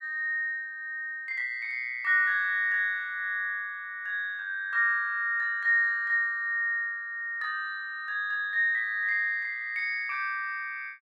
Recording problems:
none

